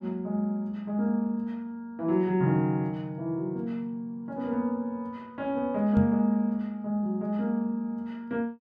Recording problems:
microphone bump; at 6 s; peak +5 dB vs average level

